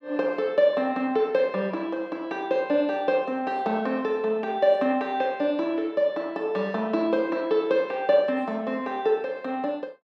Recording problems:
none

